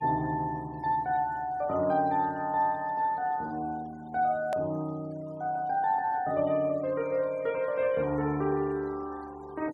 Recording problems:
denoising artefacts; signal-to-artefact ratio 25 dB
click at an edit; at 4.5 s

